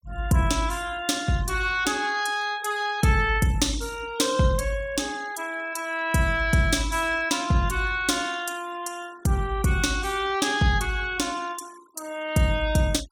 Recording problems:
denoising artefacts; signal-to-artefact ratio 21 dB

